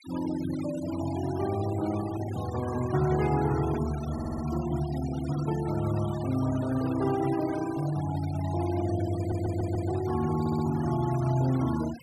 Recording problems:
noise reduction artefacts; signal-to-artefact ratio 15 dB
audio stuttering; at 4 s, at 9 s and at 10 s

